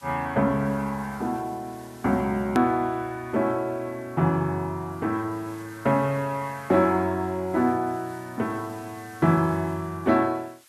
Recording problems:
background hiss; slope +3 dB per octave, SNR 26 dB
edit click; at 2.5 s

